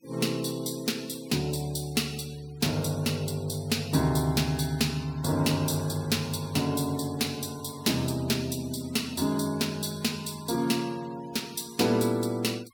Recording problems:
noise reduction artefacts; signal-to-artefact ratio 21 dB

